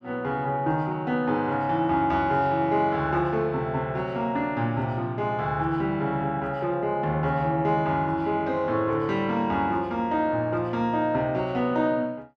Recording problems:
none

